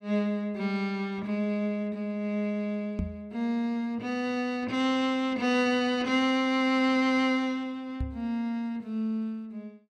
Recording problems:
microphone bump; at 3 s and at 8 s; peak +2 dB vs average level

